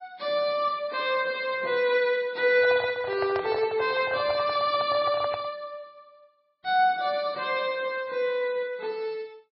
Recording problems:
lossy compression; MP3, log-spectral distance 2 dB
microphone handling noise; from 2.5 to 5.5 s; peak -3 dB vs average level

